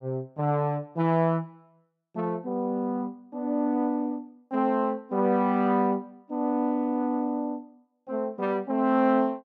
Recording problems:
none

